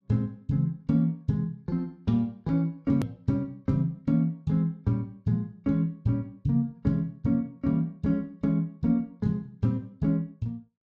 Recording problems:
hard cut with a click; at 3 s

